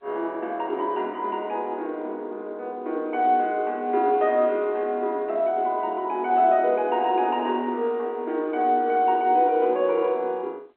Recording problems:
telephone audio; 260 Hz to 3.8 kHz, G.711

